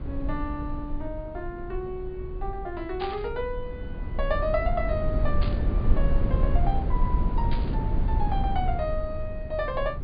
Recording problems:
low-pass filter; nothing above 4.9 kHz
low-frequency rumble; below 78 Hz, SNR -3 dB
static burst; at 3 s, at 5.5 s and at 7.5 s; peak -2 dB vs average level

